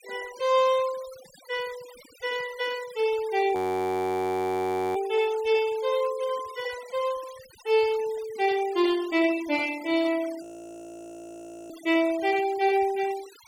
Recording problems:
denoising artefacts; signal-to-artefact ratio 19 dB
audio freezing; at 3.5 s for 1.5 s and at 10 s for 1.5 s

